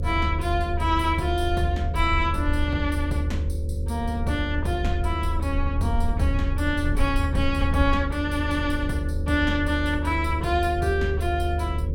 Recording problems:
hum; 50 Hz, harmonics up to 550 Hz, SNR 11 dB
rumble; below 78 Hz, SNR 1 dB

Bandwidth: 16.5 kHz